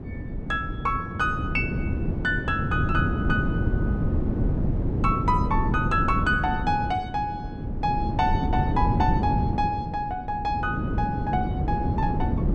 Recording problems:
wind noise; below 240 Hz, SNR 0 dB

